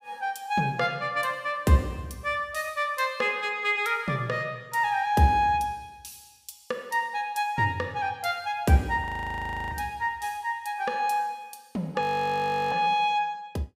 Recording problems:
frozen audio; at 9 s for 0.5 s and at 12 s for 0.5 s

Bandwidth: 15.5 kHz